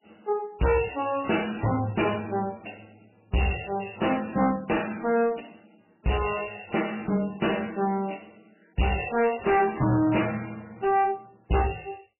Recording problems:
lossy compression; MP3, log-spectral distance 10 dB, nothing above 2.9 kHz
distorted audio; hard clipping, uneven, signal-to-distortion ratio 7 dB

